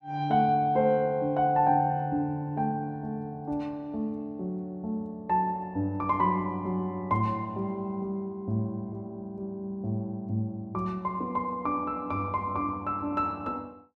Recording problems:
none

